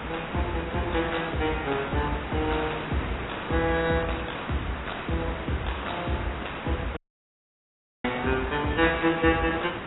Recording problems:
lossy codec; AAC, log-spectral distance 14 dB, nothing above 3.8 kHz
hiss; SNR 7 dB
audio cutting out; at 7 s for 1 s

